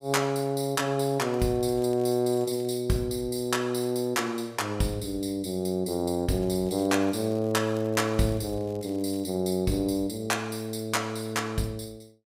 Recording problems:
crackling; from 1 to 3 s and from 6.5 to 9.5 s; loose cable, SNR 27 dB

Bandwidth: 15.5 kHz